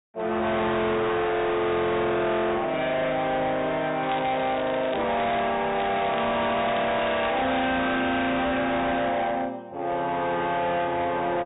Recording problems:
low-pass filter; nothing above 4 kHz
distortion; hard clipping, signal-to-distortion ratio 7 dB
crackle; from 4 to 5.5 s and from 6 to 7.5 s; loose cable, SNR 16 dB

